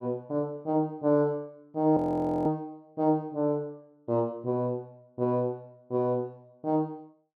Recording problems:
audio freezing; at 2 s

